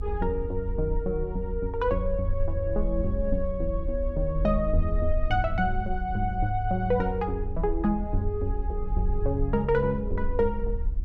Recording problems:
low-frequency rumble; below 52 Hz, SNR 5 dB

